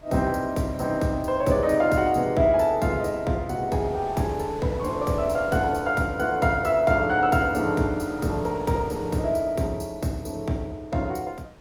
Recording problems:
wind on the microphone; below 880 Hz, SNR 21 dB

